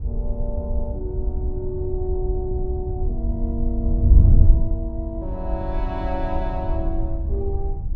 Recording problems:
wind on the microphone; below 78 Hz, SNR -7 dB

